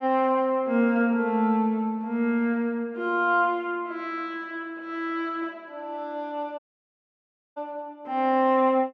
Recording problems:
audio cutting out; at 6.5 s for 1 s

